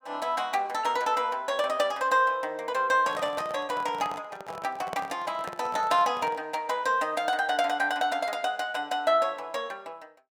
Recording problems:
microphone handling noise; from 3 to 6.5 s; peak -4 dB vs average level

